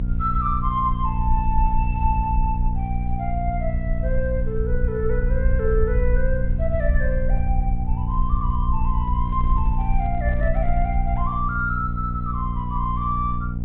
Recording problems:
treble missing; nothing above 4 kHz
electrical hum; 60 Hz, harmonics up to 480 Hz, SNR 1 dB
rumble; below 56 Hz, SNR 0 dB
handling noise; from 9 to 11 s; peak -9 dB vs average level

